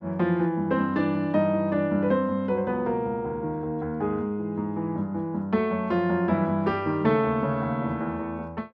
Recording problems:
none

